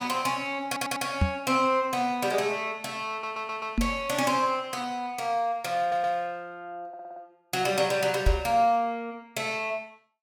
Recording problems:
audio stuttering; 4 times, first at 0.5 s
microphone bump; at 1 s, at 4 s and at 8.5 s; peak +7 dB vs average level

